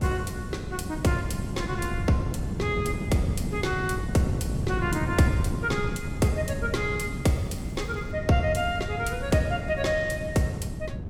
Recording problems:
wind noise; below 210 Hz, SNR 4 dB
crackling; at 7.5 s; loose cable, SNR 29 dB

